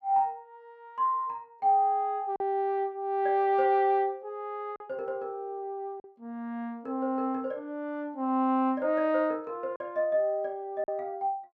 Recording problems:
lost packets; 1.8% of the sound replaced, filled with silence

